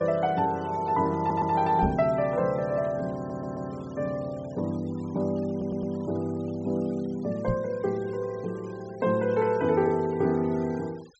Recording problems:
treble cut off; nothing above 7.8 kHz
noise reduction artefacts; signal-to-artefact ratio 24 dB
audio stuttering; at 1 s, at 3 s and at 5.5 s
microphone thump; at 2 s and at 7.5 s; peak +2 dB vs average level

